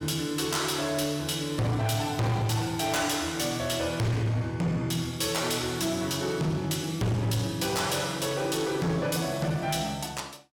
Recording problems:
distortion; hard clipping, uneven, signal-to-distortion ratio 8 dB

